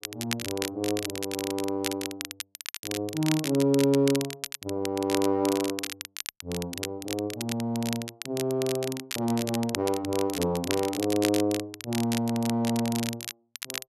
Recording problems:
crackle; vinyl, SNR 7 dB

